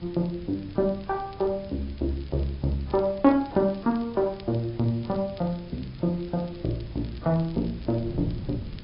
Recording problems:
low-pass filter; nothing above 5.5 kHz
codec artefacts; AAC, log-spectral distance 7 dB
background hiss; SNR 25 dB
wind on the microphone; below 180 Hz, SNR 15 dB
crackle; vinyl, SNR 28 dB

